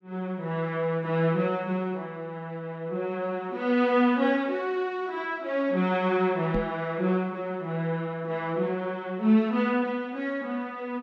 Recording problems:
microphone thump; at 6.5 s; peak +1 dB vs average level

